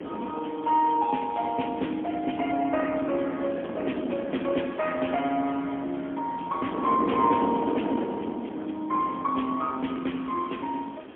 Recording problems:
phone line; 190 Hz to 3.4 kHz, AMR-NB, then MP3
background hiss; SNR 27 dB
wind on the microphone; below 510 Hz, SNR 7 dB

